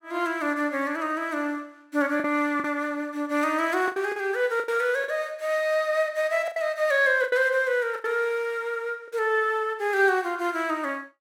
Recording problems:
lost packets; 5% of the sound replaced, filled with the last packet

